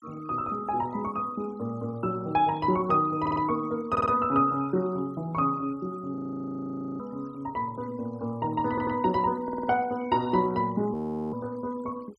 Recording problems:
noise reduction artefacts; signal-to-artefact ratio 25 dB
audio stuttering; 4 times, first at 3 s
audio freezing; at 6 s for 1 s and at 11 s

